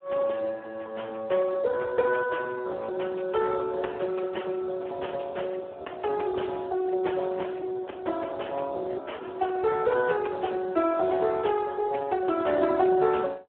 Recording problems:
phone line; 280 Hz to 3.2 kHz, Speex

